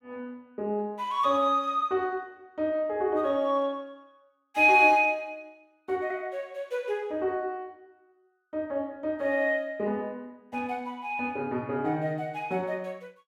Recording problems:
none

